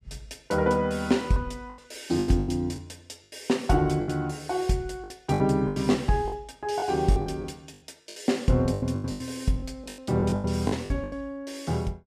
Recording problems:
packet loss; 13% of the sound replaced, filled with the last packet

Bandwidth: 15 kHz